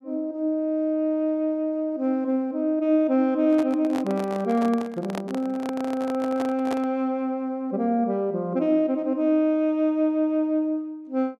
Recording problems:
handling noise; from 3.5 to 7 s; peak -4 dB vs average level

